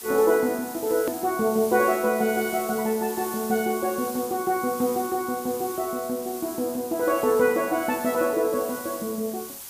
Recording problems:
hiss; slope +1 dB per octave, SNR 12 dB
edit click; at 1 s

